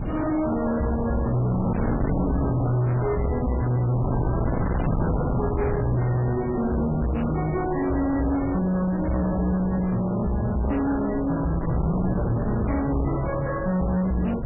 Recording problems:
codec artefacts; MP3, log-spectral distance 3 dB, nothing above 2.8 kHz
distortion; soft clipping, signal-to-distortion ratio 6 dB
wind on the microphone; below 400 Hz, SNR 4 dB

